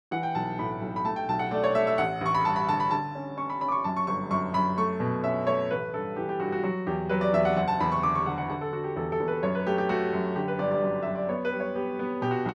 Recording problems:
none

